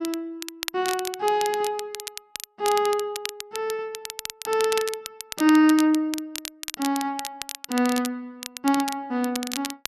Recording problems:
crackle; vinyl, SNR 10 dB

